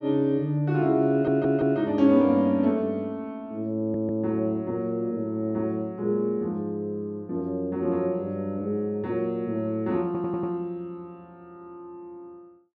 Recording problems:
audio stuttering; at 1 s, at 4 s and at 10 s

